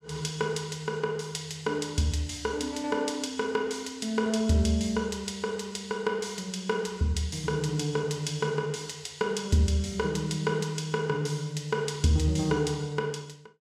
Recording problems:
none

